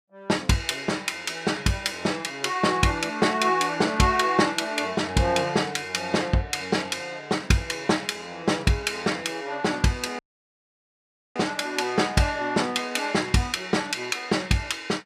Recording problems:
dropout; at 10 s for 1 s

